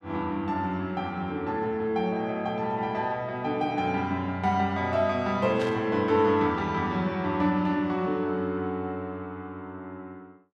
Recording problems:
static burst; at 5.5 s; peak -7 dB vs average level

